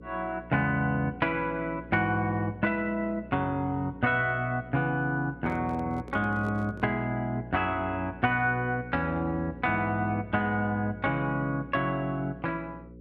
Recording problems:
mains hum; 60 Hz, harmonics up to 540 Hz, SNR 17 dB
handling noise; from 5.5 to 7 s; peak -12 dB vs average level

